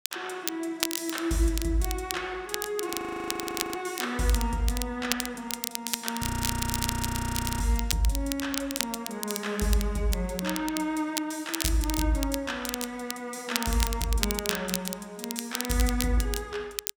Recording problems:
crackle; vinyl, SNR 4 dB
audio freezing; at 3 s for 1 s and at 6 s for 1.5 s

